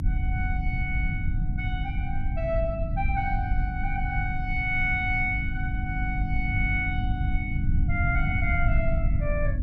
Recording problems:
electrical hum; 50 Hz, harmonics up to 300 Hz, SNR 5 dB
rumble; below 96 Hz, SNR 0 dB

